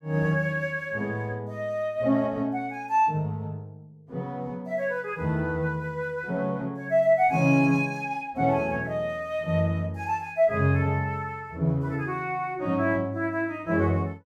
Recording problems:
none

